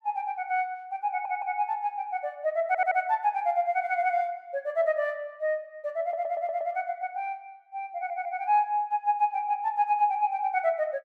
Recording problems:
audio stuttering; 4 times, first at 1 s

